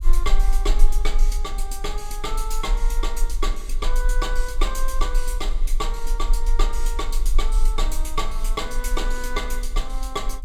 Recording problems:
rumble; below 34 Hz, strongest tone 18 Hz, SNR -4 dB

